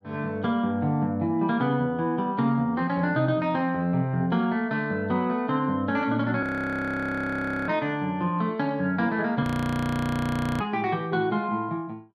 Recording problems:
frozen audio; at 6.5 s for 1.5 s and at 9.5 s for 1 s

